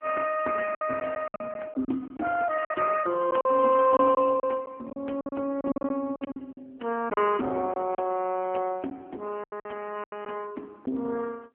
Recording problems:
telephone audio; 220 Hz to 3.1 kHz, AMR-NB
packet loss; 10% of the sound replaced, filled with silence

